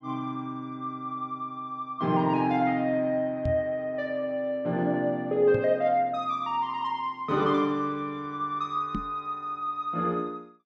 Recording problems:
microphone thump; at 3.5 s, at 5.5 s and at 9 s; peak 0 dB vs average level

